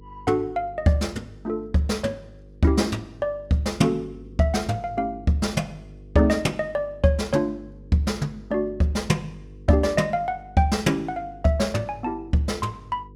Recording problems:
hum; 50 Hz, harmonics up to 500 Hz, SNR 21 dB

